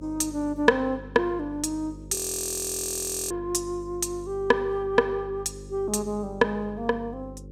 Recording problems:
hum; 50 Hz, harmonics up to 550 Hz, SNR 17 dB
audio freezing; at 2 s for 1 s

